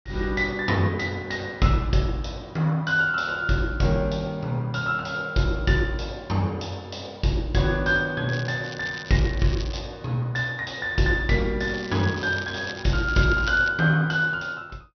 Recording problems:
treble missing; nothing above 6 kHz
crackling; from 8.5 to 10 s and from 12 to 14 s; loose cable, SNR 16 dB

